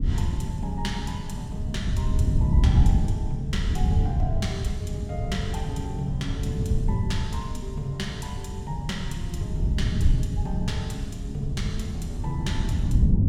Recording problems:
wind on the microphone; below 120 Hz, SNR -6 dB

